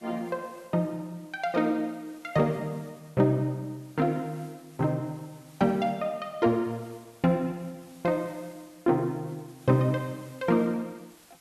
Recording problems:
hiss; slope -1 dB per octave, SNR 27 dB

